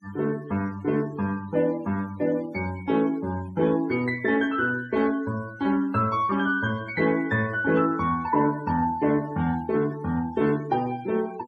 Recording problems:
denoising artefacts; signal-to-artefact ratio 21 dB

